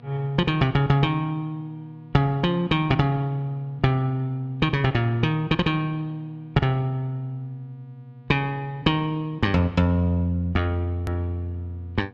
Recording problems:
hum; 60 Hz, harmonics up to 1.4 kHz, SNR 25 dB
hard cut with a click; at 11 s

